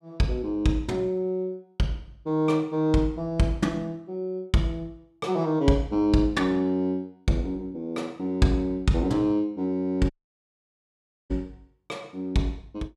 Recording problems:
audio cutting out; at 10 s for 1 s

